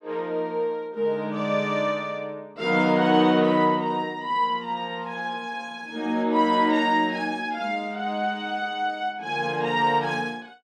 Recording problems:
none

